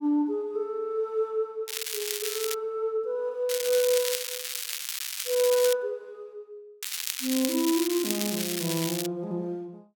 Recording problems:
crackling; at 1.5 s, from 3.5 to 5.5 s and from 7 to 9 s; loose cable, SNR 2 dB

